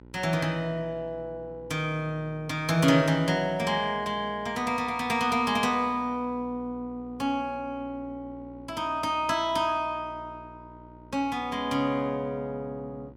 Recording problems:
hum; 60 Hz, harmonics up to 1.1 kHz, SNR 21 dB

